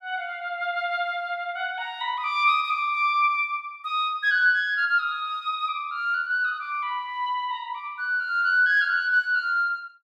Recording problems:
none

